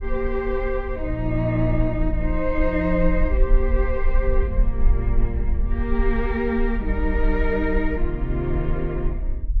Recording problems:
rumble; below 48 Hz, SNR 2 dB

